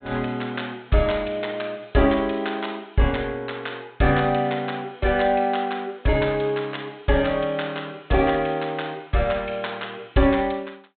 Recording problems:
treble cut off; nothing above 4 kHz

